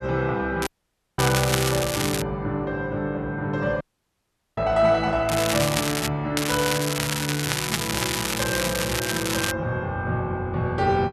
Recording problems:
crackle; from 0.5 to 2 s, at 5.5 s and from 6.5 to 9.5 s; loose cable, SNR 2 dB
audio cutting out; at 0.5 s for 0.5 s and at 4 s for 1 s

